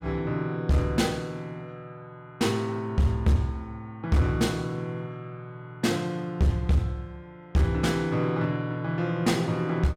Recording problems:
distortion; hard clipping, uneven, signal-to-distortion ratio 10 dB

